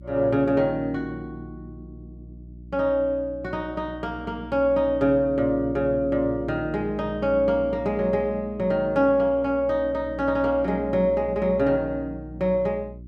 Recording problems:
electrical hum; 60 Hz, harmonics up to 360 Hz, SNR 17 dB

